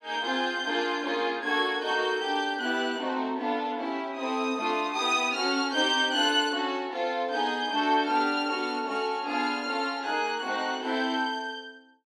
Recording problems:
none

